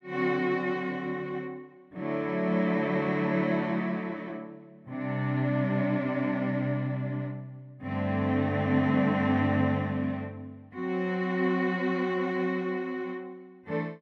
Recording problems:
none

